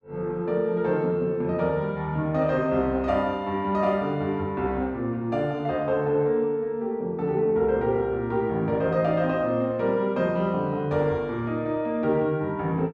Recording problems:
none

